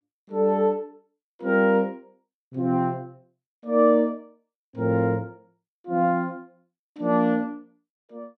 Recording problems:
none

